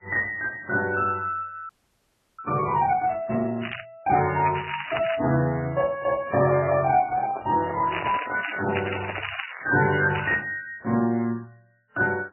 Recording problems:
codec artefacts; MP3, then AAC, log-spectral distance 8 dB, nothing above 2.7 kHz
frozen audio; at 1.5 s for 0.5 s
crackling; at 3.5 s, at 4.5 s and from 8 to 10 s; loose cable, SNR 9 dB
microphone handling noise; from 7 to 9.5 s; peak -5 dB vs average level

